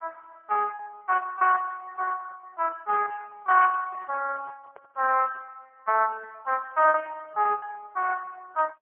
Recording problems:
telephone audio; 370 Hz to 2.8 kHz, AMR-NB, then MP3
packet loss; 12% of the sound replaced, filled with repeated pitch periods
handling noise; from 3.5 to 5.5 s; peak -17 dB vs average level

